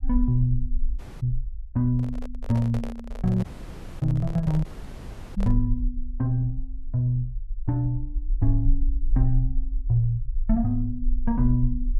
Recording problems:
low-frequency rumble; below 42 Hz, strongest tone 22 Hz, SNR 6 dB
dropout; at 1 s, at 3.5 s for 0.5 s and at 4.5 s for 0.5 s
microphone handling noise; from 2 to 5.5 s; peak -7 dB vs average level

